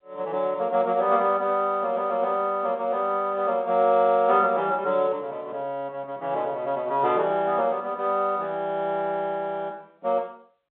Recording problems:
phone line; 260 Hz to 3.7 kHz, G.711

